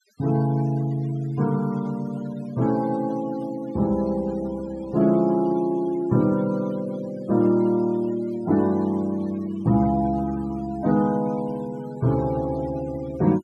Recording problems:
denoising artefacts; signal-to-artefact ratio 21 dB

